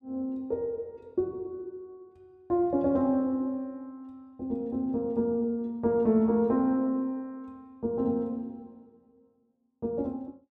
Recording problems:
none

